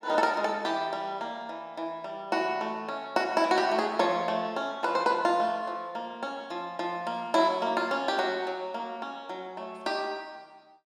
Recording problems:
none

